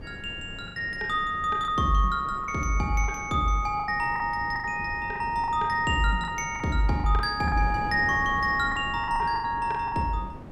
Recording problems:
wind noise; below 330 Hz, SNR 14 dB
lost packets; 9% of the sound replaced, filled with the last packet

